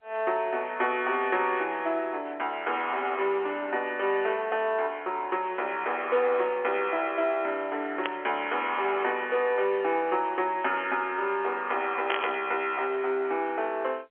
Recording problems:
telephone audio; 300 Hz to 3.3 kHz, G.711
burst of static; at 8 s and at 12 s; peak +3 dB vs average level

